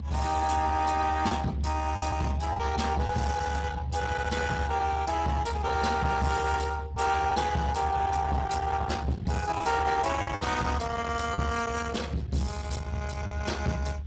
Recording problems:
lossy compression; Speex, log-spectral distance 4 dB, nothing above 7.8 kHz
distortion; soft clipping, signal-to-distortion ratio 10 dB
rumble; below 460 Hz, strongest tone 72 Hz, SNR 6 dB
packet loss; 3% of the sound replaced, filled with the last packet

